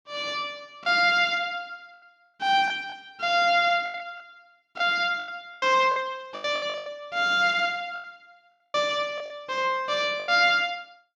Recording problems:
lost packets; 10% of the sound replaced, filled with the last packet

